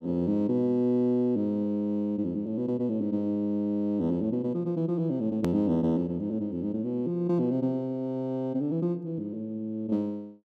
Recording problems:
click at an edit; at 5.5 s

